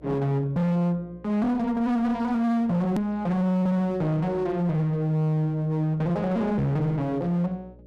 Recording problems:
distorted audio; hard clipping, uneven, signal-to-distortion ratio 6 dB
hum; 60 Hz, harmonics up to 600 Hz, SNR 26 dB
hard cut with a click; at 3 s

